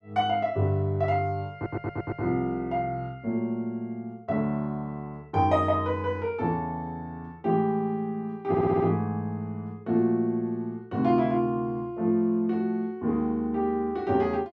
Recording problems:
audio stuttering; at 1.5 s and at 8.5 s

